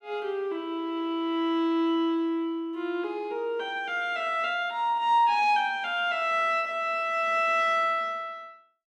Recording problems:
none

